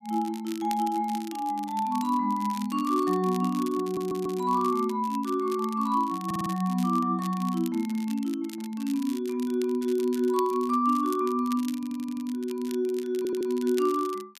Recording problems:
crackling; vinyl, SNR 19 dB
audio stuttering; 4 times, first at 4 s

